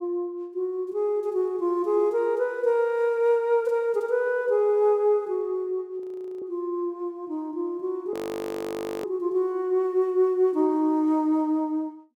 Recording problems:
audio freezing; at 6 s and at 8 s for 1 s

